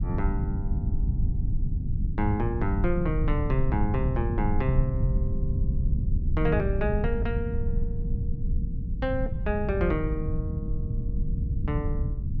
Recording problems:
low-frequency rumble; below 100 Hz, SNR -1 dB

